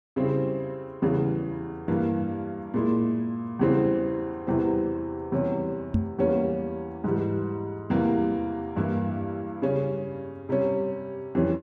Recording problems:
microphone thump; at 6 s; peak +6 dB vs average level

